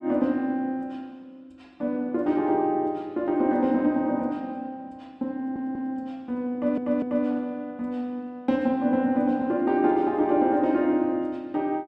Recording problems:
stutter; at 5.5 s and at 6.5 s

